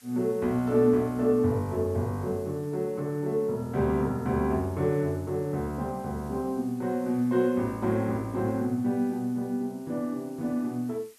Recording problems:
hiss; slope +1 dB per octave, SNR 27 dB

